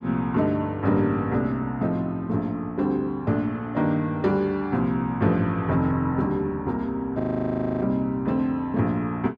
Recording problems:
frozen audio; at 7 s for 0.5 s

